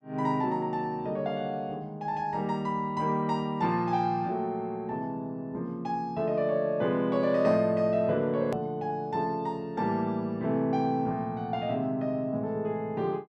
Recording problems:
click at an edit; at 8.5 s

